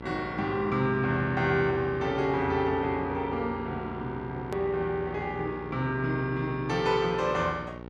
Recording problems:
electrical hum; 60 Hz, harmonics up to 1.9 kHz, SNR 13 dB
edit click; at 4.5 s

